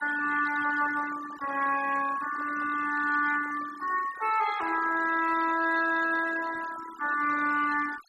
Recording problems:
denoising artefacts; signal-to-artefact ratio 15 dB

